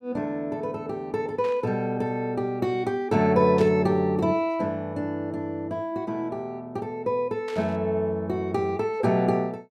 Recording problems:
burst of static; at 1.5 s, at 3.5 s and at 7.5 s; peak -10 dB vs average level

